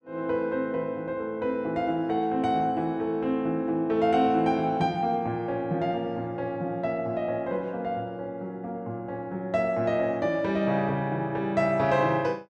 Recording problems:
none

